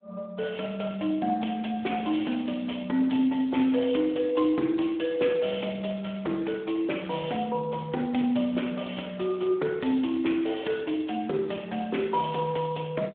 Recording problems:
telephone audio; 220 Hz to 3.6 kHz, Speex

